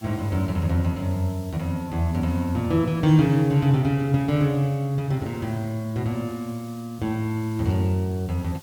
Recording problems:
background hiss; slope 0 dB per octave, SNR 25 dB

